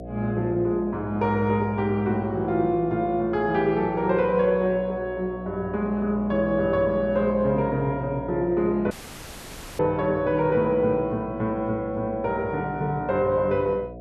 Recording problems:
hum; 60 Hz, harmonics up to 720 Hz, SNR 14 dB
audio cutting out; at 9 s for 1 s

